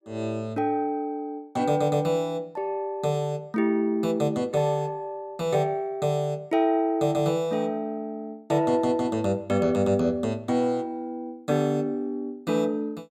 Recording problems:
none

